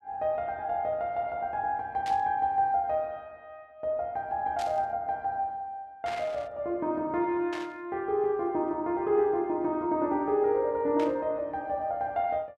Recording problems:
burst of static; 5 times, first at 2 s; peak -7 dB vs average level

